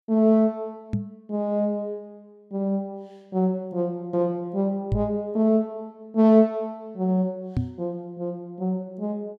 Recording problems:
knock on the microphone; at 1 s, at 5 s and at 7.5 s; peak +3 dB vs average level

